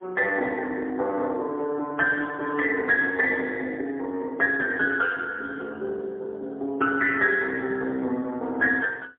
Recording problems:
telephone audio; 280 Hz to 3.1 kHz, AMR-NB, then MP3

